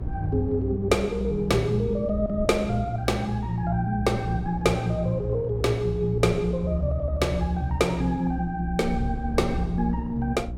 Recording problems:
mains hum; 60 Hz, harmonics up to 360 Hz, SNR 13 dB
rumble; below 76 Hz, strongest tone 64 Hz, SNR 10 dB
wind on the microphone; below 520 Hz, SNR 22 dB

